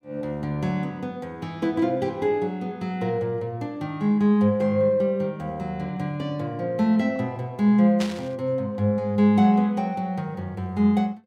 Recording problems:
static burst; at 8 s; peak -4 dB vs average level

